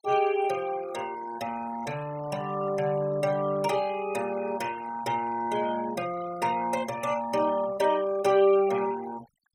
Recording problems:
noise reduction artefacts; signal-to-artefact ratio 18 dB

